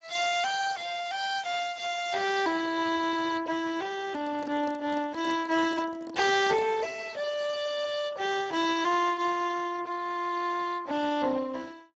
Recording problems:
lossy compression; Speex, log-spectral distance 5 dB
microphone handling noise; from 4 to 7 s; peak -6 dB vs average level

